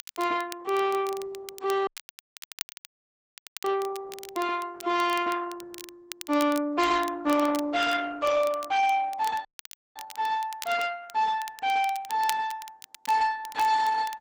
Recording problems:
lossy codec; Opus, log-spectral distance 3 dB
distortion; soft clipping, signal-to-distortion ratio 11 dB
crackle; vinyl, SNR 16 dB
dropout; at 2 s for 2 s and at 9.5 s for 0.5 s

